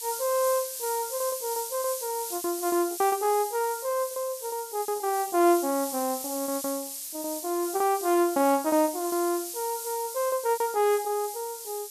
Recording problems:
hiss; SNR 7 dB
lost packets; 10% of the sound replaced, filled with repeated pitch periods

